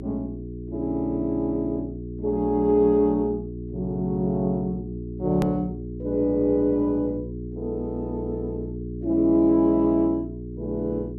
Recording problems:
electrical hum; 60 Hz, harmonics up to 420 Hz, SNR 10 dB
click at an edit; at 5.5 s

